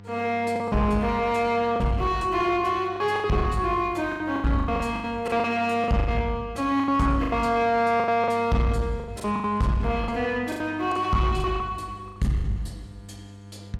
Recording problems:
distortion; soft clipping, signal-to-distortion ratio 11 dB
hum; 50 Hz, harmonics up to 1.2 kHz, SNR 20 dB
packet loss; 13% of the sound replaced, filled with the last packet

